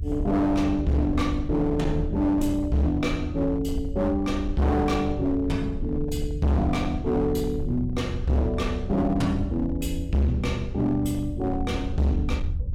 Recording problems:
distortion; hard clipping, signal-to-distortion ratio 6 dB
low-frequency rumble; below 78 Hz, SNR 8 dB

